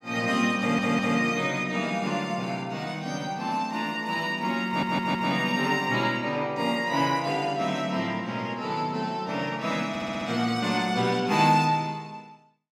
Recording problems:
stutter; at 0.5 s, at 4.5 s and at 10 s

